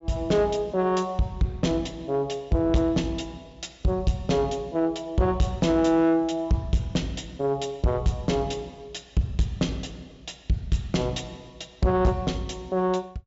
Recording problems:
treble cut off; nothing above 7.5 kHz
distorted audio; soft clipping, signal-to-distortion ratio 11 dB

